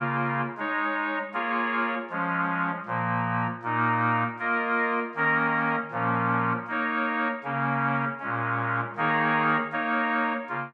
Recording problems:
none

